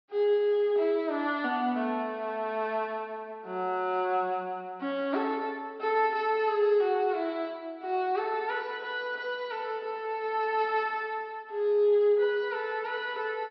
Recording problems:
low-pass filter; nothing above 5.5 kHz

